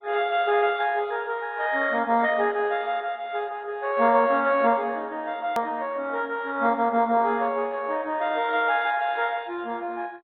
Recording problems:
treble missing; nothing above 4 kHz
codec artefacts; MP2, log-spectral distance 4 dB
click at an edit; at 5.5 s

